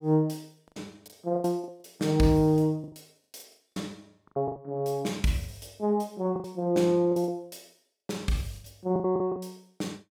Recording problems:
lost packets; 13% of the sound replaced, filled with the last packet

